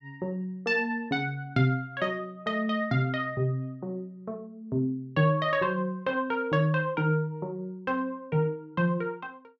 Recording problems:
none

